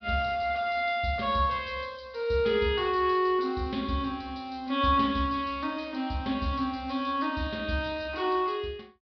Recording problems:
low-pass filter; nothing above 5.5 kHz

